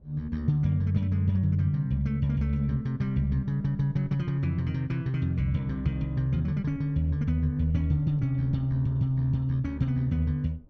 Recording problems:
rumble; below 140 Hz, SNR 24 dB

